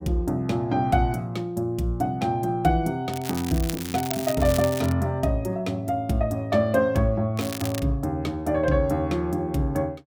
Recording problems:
crackling; from 3 to 5 s and at 7.5 s; loose cable, SNR 11 dB

